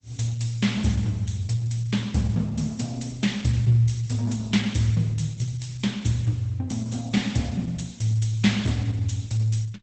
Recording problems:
codec artefacts; Opus, log-spectral distance 4 dB, nothing above 8 kHz

